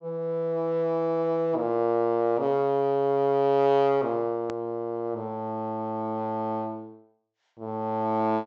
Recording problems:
treble cut off; nothing above 8 kHz
hard cut with a click; at 4.5 s

